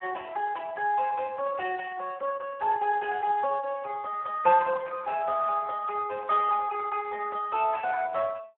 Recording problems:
phone line; 320 Hz to 3 kHz, Speex

